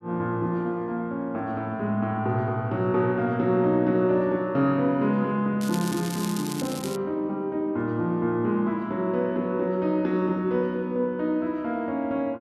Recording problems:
crackle; from 5.5 to 7 s; loose cable, SNR 12 dB

